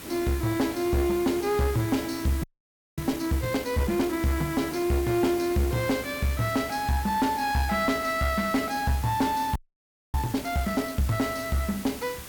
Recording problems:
distortion; soft clipping, signal-to-distortion ratio 10 dB
hiss; SNR 13 dB
audio freezing; at 2.5 s for 0.5 s and at 9.5 s for 0.5 s

